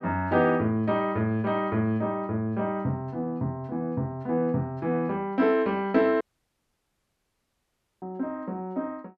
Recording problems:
audio cutting out; at 6 s for 2 s

